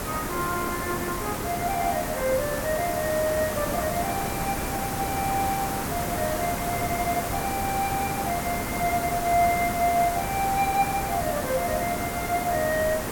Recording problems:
hiss; slope -6 dB per octave, SNR 2 dB

